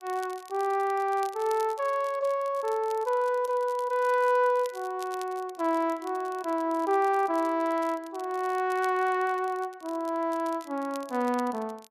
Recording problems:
crackling; vinyl, SNR 23 dB

